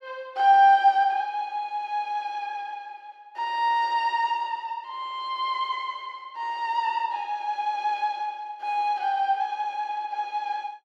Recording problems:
none

